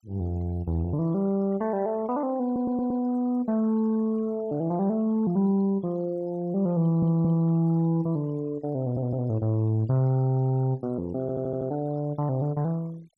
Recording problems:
noise reduction artefacts; signal-to-artefact ratio 27 dB
audio stuttering; 4 times, first at 2.5 s

